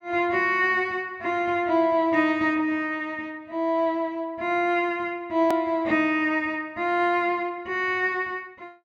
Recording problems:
click at an edit; at 5.5 s

